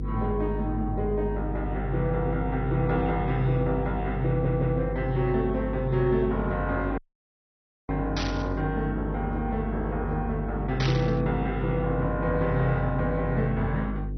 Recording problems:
lossy compression; MP2, log-spectral distance 2 dB, nothing above 5.2 kHz
hum; 50 Hz, harmonics up to 500 Hz, SNR 6 dB
audio stuttering; at 4.5 s
dropout; at 7 s for 1 s
static burst; at 8 s and at 11 s; peak 0 dB vs average level

